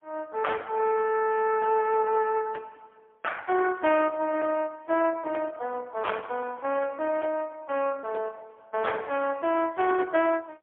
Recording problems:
telephone audio; 260 Hz to 3.3 kHz, AMR-NB, then MP3

